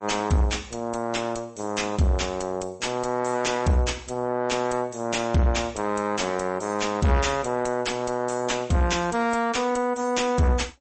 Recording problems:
lossy compression; MP3, log-spectral distance 5 dB, nothing above 8.2 kHz
distorted audio; soft clipping, signal-to-distortion ratio 10 dB

